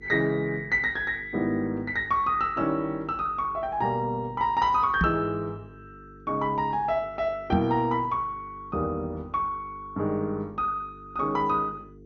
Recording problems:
lossy codec; MP2, log-spectral distance 2 dB, nothing above 6.2 kHz
hum; 50 Hz, harmonics up to 450 Hz, SNR 22 dB
microphone bump; at 5 s and at 7.5 s; peak +5 dB vs average level

